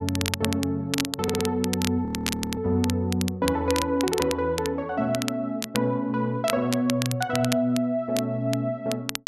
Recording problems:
crackling; vinyl, SNR 7 dB
audio stuttering; at 1 s
frozen audio; at 2 s for 0.5 s

